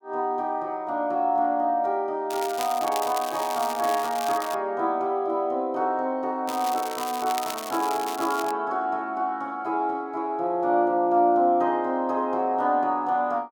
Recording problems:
crackle; from 2.5 to 4.5 s and from 6.5 to 8.5 s; loose cable, SNR 12 dB

